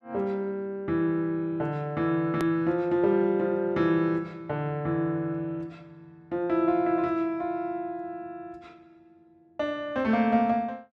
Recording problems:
hard cut with a click; at 2.5 s

